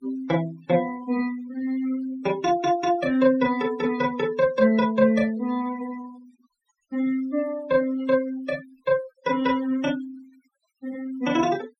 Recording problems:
denoising artefacts; signal-to-artefact ratio 20 dB

